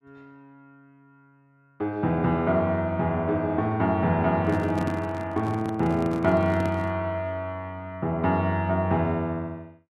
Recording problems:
handling noise; from 4.5 to 7 s; peak -1 dB vs average level

